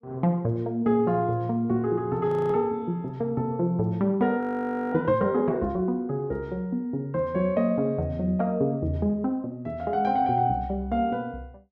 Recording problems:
audio freezing; at 2.5 s and at 4.5 s for 0.5 s

